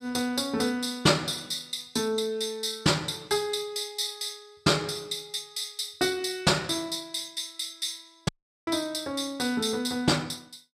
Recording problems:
audio cutting out; at 8.5 s

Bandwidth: 15.5 kHz